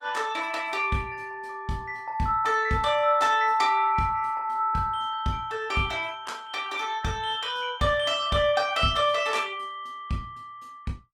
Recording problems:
codec artefacts; Opus, log-spectral distance 2 dB, nothing above 19.5 kHz

